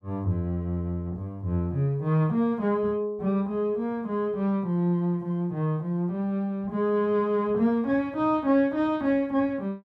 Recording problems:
none

